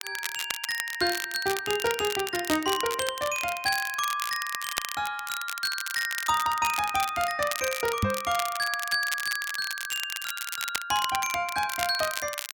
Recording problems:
crackling; vinyl, SNR 6 dB
knock on the microphone; at 8 s; peak +5 dB vs average level

